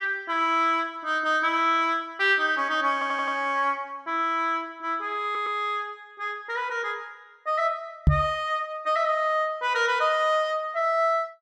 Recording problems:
stutter; at 3 s and at 5 s
knock on the microphone; at 8 s; peak +9 dB vs average level

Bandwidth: 13.5 kHz